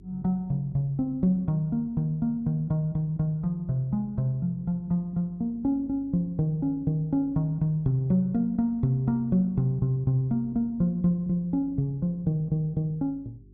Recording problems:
hum; 50 Hz, harmonics up to 400 Hz, SNR 26 dB

